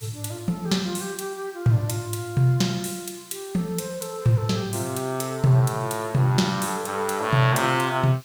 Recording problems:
background hiss; slope +2 dB per octave, SNR 25 dB

